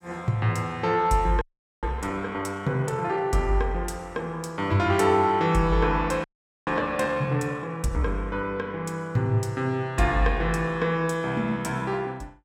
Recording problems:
audio freezing; at 1.5 s and at 6 s

